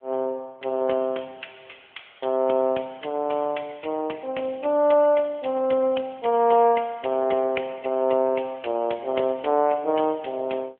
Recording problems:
telephone audio; 280 Hz to 3.4 kHz, AMR-NB

